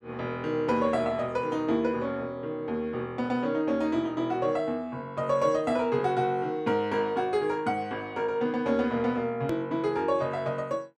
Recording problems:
edit click; at 9.5 s

